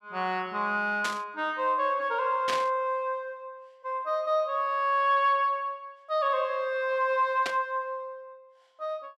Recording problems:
burst of static; at 1 s, at 2.5 s and at 7.5 s; peak 0 dB vs average level

